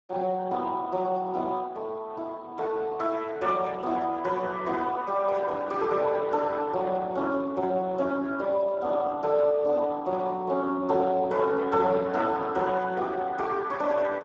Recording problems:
lossy compression; Speex, log-spectral distance 3 dB

